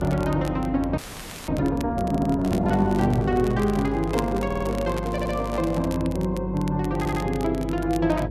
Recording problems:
hum; 50 Hz, harmonics up to 550 Hz, SNR 9 dB
crackling; vinyl, SNR 20 dB
audio freezing; at 1 s for 0.5 s
audio stuttering; 4 times, first at 2 s
microphone handling noise; from 2.5 to 6 s; peak -8 dB vs average level

